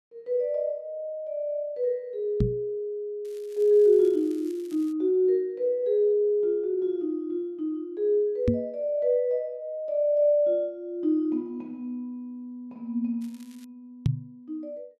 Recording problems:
microphone thump; at 2.5 s, at 8.5 s and at 14 s; peak +6 dB vs average level
crackling; from 3.5 to 5 s and at 13 s; loose cable, SNR 29 dB

